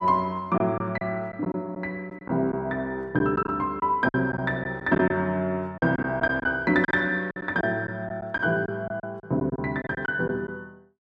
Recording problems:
lost packets; 8% of the sound replaced, filled with silence

